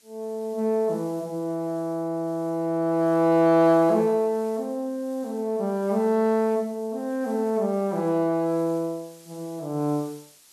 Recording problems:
background hiss; SNR 27 dB

